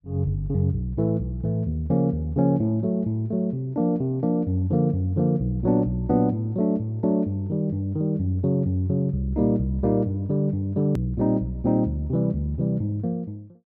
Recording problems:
click at an edit; at 11 s

